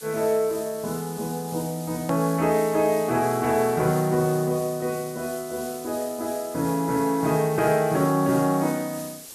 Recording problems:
hiss; SNR 14 dB
hard cut with a click; at 2 s

